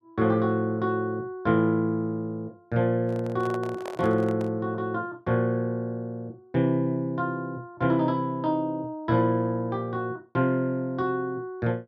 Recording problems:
microphone handling noise; from 3 to 4.5 s; peak -6 dB vs average level

